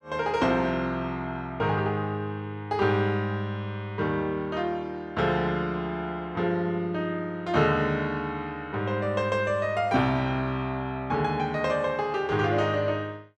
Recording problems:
none

